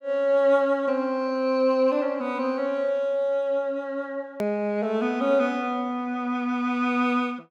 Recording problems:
click at an edit; at 4.5 s

